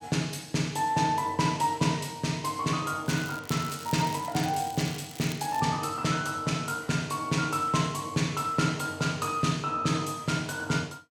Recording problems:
crackle; from 3 to 5.5 s; loose cable, SNR 15 dB

